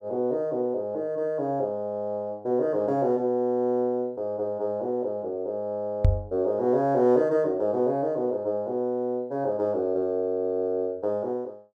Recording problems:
microphone thump; at 6 s; peak +9 dB vs average level

